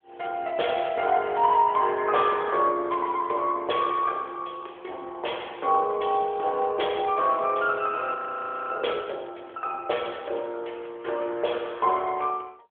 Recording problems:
telephone audio; 370 Hz to 3.5 kHz, AMR-NB
audio freezing; at 8 s for 0.5 s

